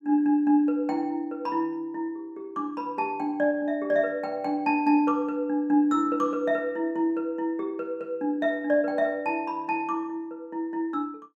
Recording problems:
none

